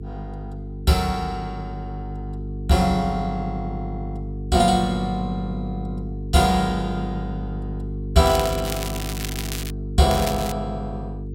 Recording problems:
hum; 50 Hz, harmonics up to 450 Hz, SNR 8 dB
crackling; from 8 to 9.5 s and at 10 s; loose cable, SNR 10 dB

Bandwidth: 16 kHz